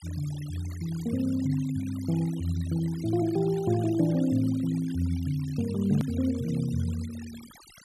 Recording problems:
noise reduction artefacts; signal-to-artefact ratio 19 dB
click at an edit; at 6 s

